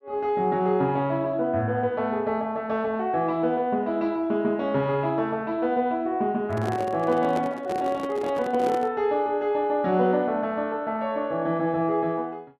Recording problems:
microphone handling noise; from 6.5 to 9 s; peak -3 dB vs average level

